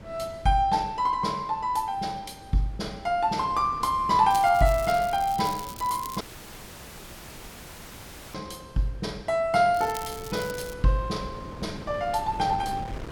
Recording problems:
wind noise; below 450 Hz, SNR 18 dB
crackling; from 4.5 to 6 s and at 9.5 s; loose cable, SNR 16 dB
audio cutting out; at 6 s for 2 s

